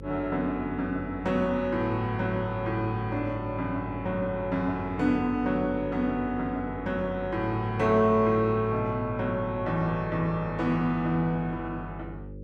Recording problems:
hum; 50 Hz, harmonics up to 550 Hz, SNR 13 dB

